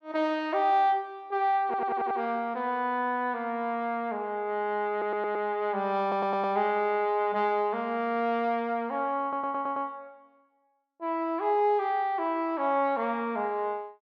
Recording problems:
stutter; 4 times, first at 1.5 s

